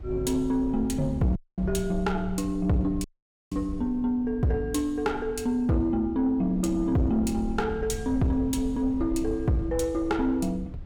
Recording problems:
distortion; soft clipping, signal-to-distortion ratio 11 dB
low-frequency rumble; below 88 Hz, SNR 12 dB
dropout; at 1.5 s and at 3 s

